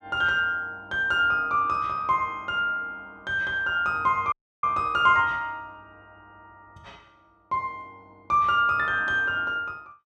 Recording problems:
dropout; at 4.5 s

